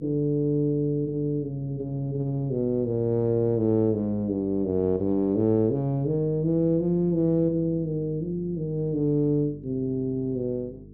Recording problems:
hum; 50 Hz, harmonics up to 450 Hz, SNR 19 dB

